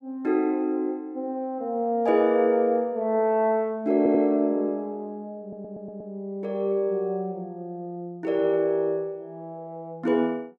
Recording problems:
stutter; at 4 s and at 5.5 s

